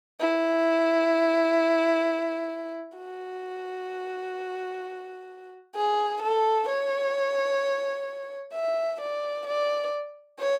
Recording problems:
none

